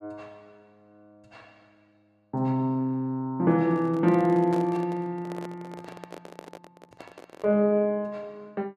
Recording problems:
microphone handling noise; from 3.5 to 7.5 s; peak -6 dB vs average level

